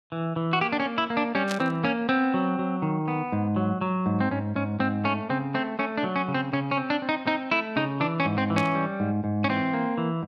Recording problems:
static burst; at 1.5 s and at 8.5 s; peak -2 dB vs average level

